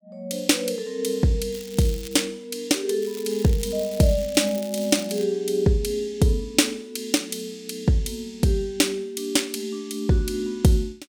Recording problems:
crackling; at 1.5 s and from 3 to 5.5 s; loose cable, SNR 17 dB

